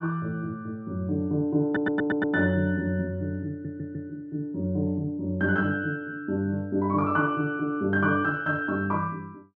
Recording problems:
stutter; at 1.5 s and at 3.5 s

